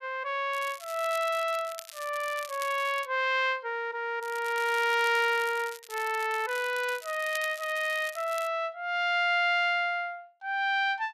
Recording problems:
crackle; from 0.5 to 3 s and from 4 to 8.5 s; loose cable, SNR 16 dB

